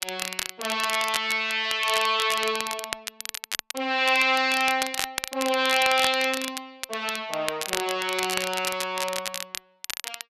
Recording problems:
crackle; vinyl, SNR 7 dB

